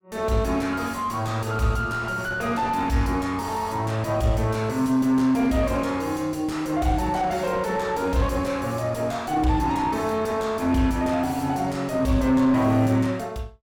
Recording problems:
distorted audio; soft clipping, signal-to-distortion ratio 9 dB

